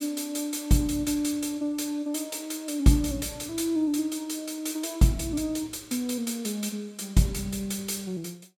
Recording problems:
none

